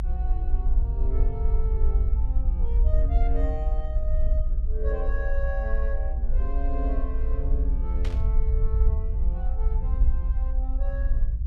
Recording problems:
low-frequency rumble; below 56 Hz, strongest tone 22 Hz, SNR -11 dB
static burst; at 8 s; peak +1 dB vs average level

